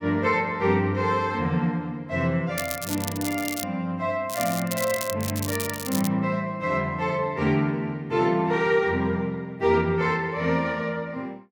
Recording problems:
crackling; from 2.5 to 3.5 s, at 4.5 s and at 5 s; loose cable, SNR 8 dB

